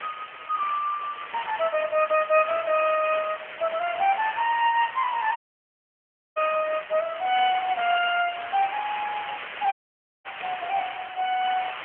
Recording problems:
phone line; 280 Hz to 3.1 kHz, AMR-NB
hiss; SNR 11 dB
audio cutting out; at 5.5 s for 1 s and at 9.5 s for 0.5 s

